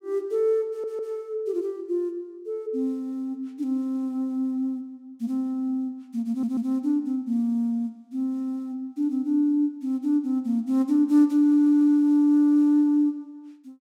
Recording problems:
stutter; at 0.5 s, at 6.5 s and at 11 s

